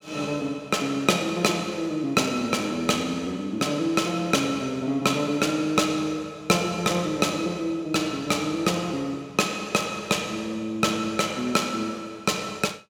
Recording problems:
none

